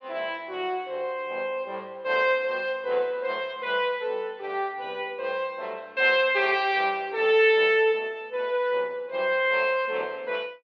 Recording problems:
none

